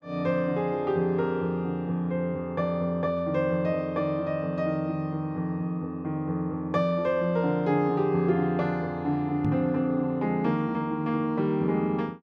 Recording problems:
knock on the microphone; at 9.5 s; peak +3 dB vs average level

